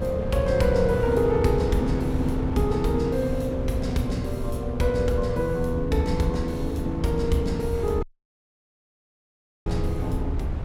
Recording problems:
low-frequency rumble; below 76 Hz, SNR 9 dB
wind on the microphone; below 290 Hz, SNR 7 dB
dropout; at 8 s for 1.5 s

